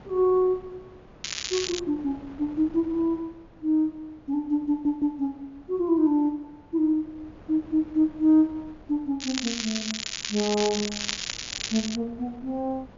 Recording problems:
treble cut off; nothing above 7.1 kHz
wind noise; below 640 Hz, SNR 23 dB
crackle; at 1 s and from 9 to 12 s; loose cable, SNR 5 dB
audio stuttering; at 4.5 s

